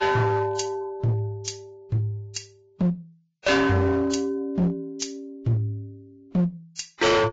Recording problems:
lossy compression; Vorbis, log-spectral distance 2 dB, nothing above 7.3 kHz
distorted audio; hard clipping, uneven, signal-to-distortion ratio 7 dB

